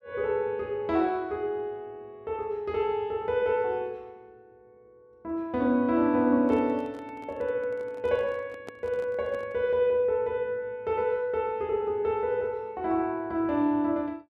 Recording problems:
handling noise; from 6.5 to 9.5 s; peak -9 dB vs average level

